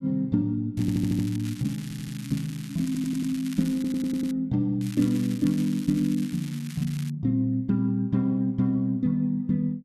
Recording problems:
crackle; from 1 to 4.5 s and from 5 to 7 s; loose cable, SNR 18 dB
stutter; 4 times, first at 1 s

